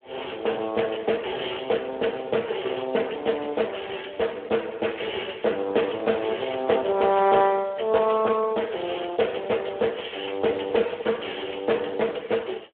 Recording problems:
telephone audio; 280 Hz to 3.5 kHz, Speex

